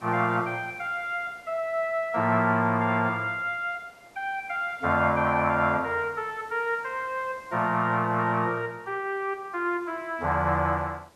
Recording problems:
background hiss; slope -5 dB per octave, SNR 27 dB

